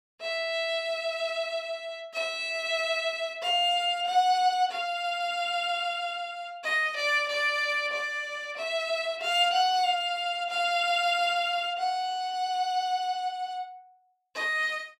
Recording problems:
none

